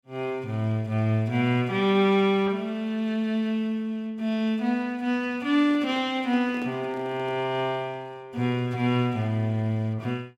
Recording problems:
handling noise; from 5.5 to 7.5 s; peak -10 dB vs average level

